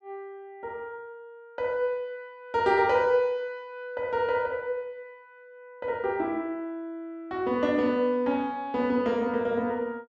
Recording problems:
none

